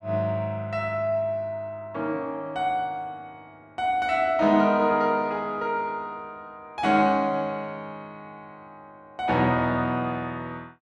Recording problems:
none

